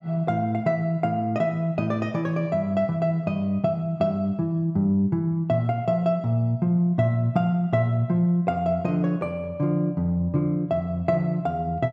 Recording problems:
none

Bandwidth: 14 kHz